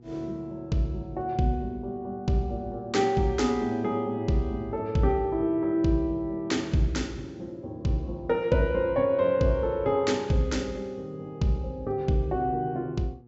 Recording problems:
treble cut off; nothing above 7.6 kHz
hum; 60 Hz, harmonics up to 840 Hz, SNR 25 dB

